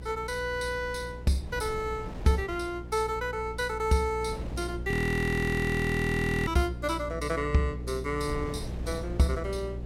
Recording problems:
mains hum; 60 Hz, harmonics up to 540 Hz, SNR 10 dB
wind on the microphone; below 320 Hz, SNR 15 dB
frozen audio; at 5 s for 1.5 s

